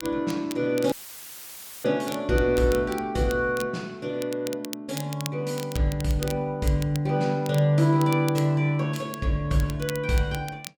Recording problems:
crackle; vinyl, SNR 16 dB
dropout; at 1 s for 1 s; filled with static

